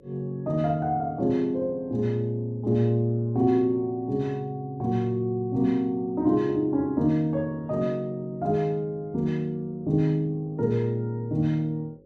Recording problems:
hum; 50 Hz, harmonics up to 550 Hz, SNR 30 dB

